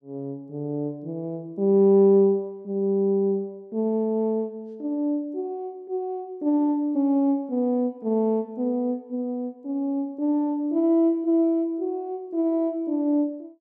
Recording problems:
none

